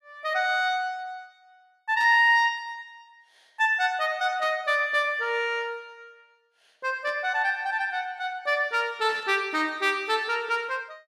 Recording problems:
static burst; 4 times, first at 2 s; peak -14 dB vs average level

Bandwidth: 14.5 kHz